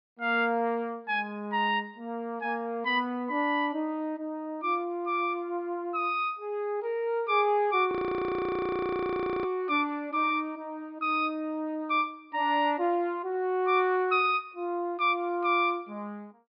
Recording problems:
treble cut off; nothing above 5.1 kHz
audio freezing; at 8 s for 1.5 s

